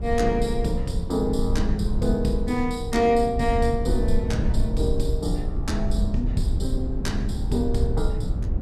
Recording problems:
rumble; below 86 Hz, SNR 2 dB

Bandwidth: 14.5 kHz